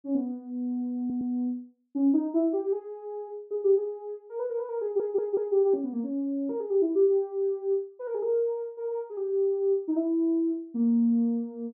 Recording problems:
stutter; at 1 s and at 5 s

